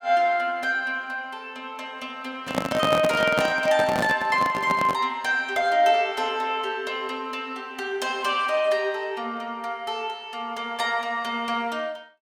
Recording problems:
microphone handling noise; from 2.5 to 5 s; peak +4 dB vs average level

